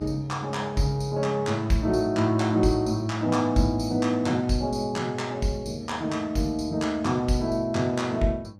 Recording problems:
hum; 50 Hz, harmonics up to 900 Hz, SNR 22 dB

